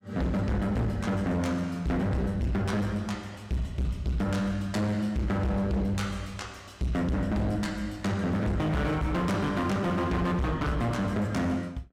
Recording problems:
distortion; hard clipping, signal-to-distortion ratio 7 dB

